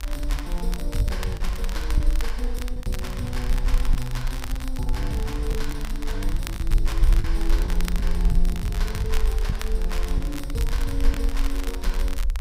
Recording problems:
hiss; SNR 28 dB
low-frequency rumble; below 44 Hz, strongest tone 28 Hz, SNR -4 dB
wind on the microphone; below 300 Hz, SNR 22 dB
crackle; vinyl, SNR 7 dB
lost packets; 5% of the sound replaced, filled with the last packet

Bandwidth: 15.5 kHz